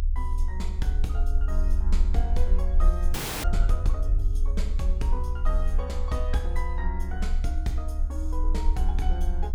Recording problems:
rumble; below 66 Hz, strongest tone 26 Hz, SNR -7 dB
frozen audio; at 3 s

